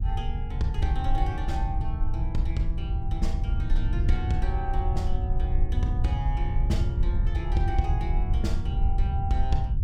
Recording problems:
rumble; below 76 Hz, SNR -5 dB

